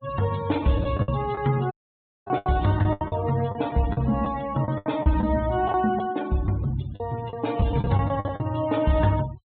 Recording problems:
low-pass filter; nothing above 4 kHz
noise reduction artefacts; signal-to-artefact ratio 18 dB
lost packets; 11% of the sound replaced, filled with the last packet
dropout; at 1.5 s for 0.5 s

